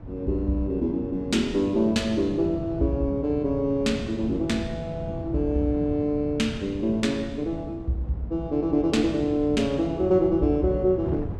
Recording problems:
wind on the microphone; below 220 Hz, SNR 11 dB

